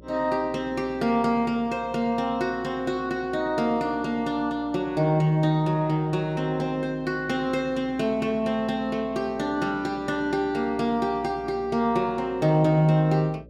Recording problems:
hum; 60 Hz, harmonics up to 600 Hz, SNR 24 dB

